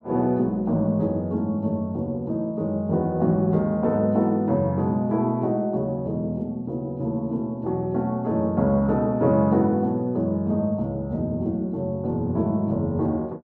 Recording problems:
none

